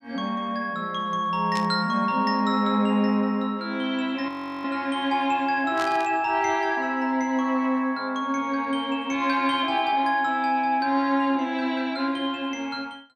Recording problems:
burst of static; at 1.5 s and at 6 s; peak -6 dB vs average level
audio freezing; at 4.5 s

